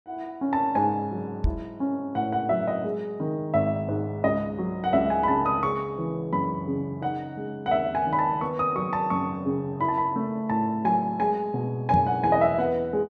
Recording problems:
microphone thump; at 1.5 s and at 12 s; peak +4 dB vs average level

